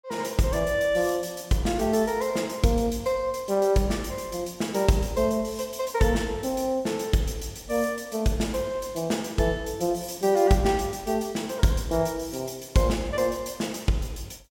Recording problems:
none

